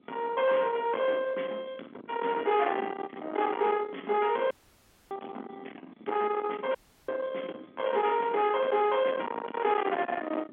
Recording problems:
phone line; 220 Hz to 3.7 kHz, G.711
distortion; soft clipping, signal-to-distortion ratio 8 dB
wind on the microphone; below 1.2 kHz, SNR 11 dB
dropout; at 4.5 s for 0.5 s and at 7 s

